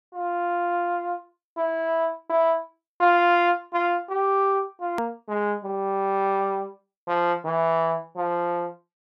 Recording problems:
edit click; at 5 s

